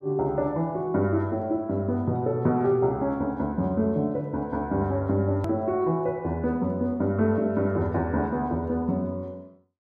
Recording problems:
hard cut with a click; at 5.5 s

